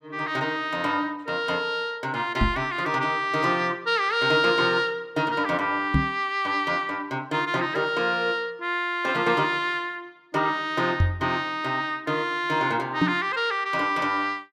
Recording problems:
microphone bump; 4 times, first at 2.5 s; peak +7 dB vs average level

